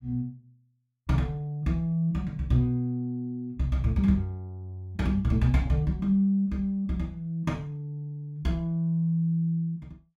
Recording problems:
none

